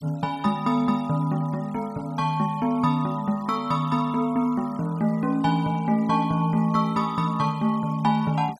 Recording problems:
denoising artefacts; signal-to-artefact ratio 25 dB

